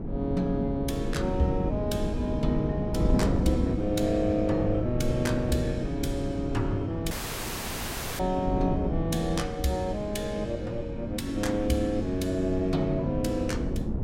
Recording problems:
wind on the microphone; below 260 Hz, SNR 3 dB
dropout; at 7 s for 1 s

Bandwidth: 16 kHz